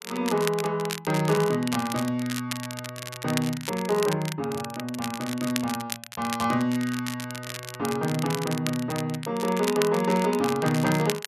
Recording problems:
crackle; vinyl, SNR 9 dB

